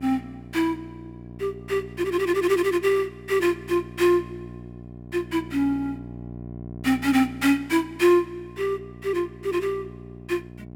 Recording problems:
electrical hum; 60 Hz, harmonics up to 780 Hz, SNR 16 dB

